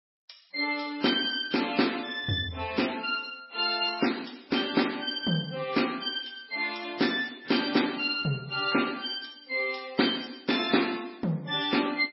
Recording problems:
lossy codec; MP3, log-spectral distance 7 dB, nothing above 4.8 kHz

